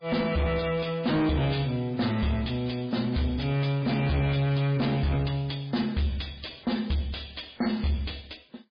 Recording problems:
lossy compression; MP3, log-spectral distance 7 dB, nothing above 4.6 kHz
distortion; soft clipping, signal-to-distortion ratio 8 dB

